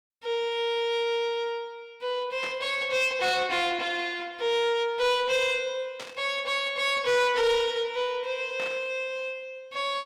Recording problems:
distorted audio; soft clipping, signal-to-distortion ratio 12 dB
static burst; at 2.5 s, at 6 s and at 8.5 s; peak -7 dB vs average level

